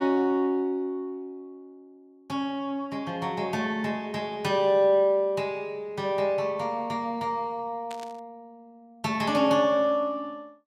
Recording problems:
burst of static; at 8 s; peak -11 dB vs average level

